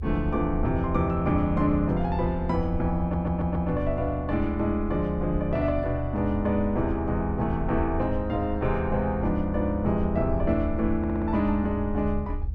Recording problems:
low-frequency rumble; below 76 Hz, SNR 7 dB
stutter; at 3 s and at 11 s

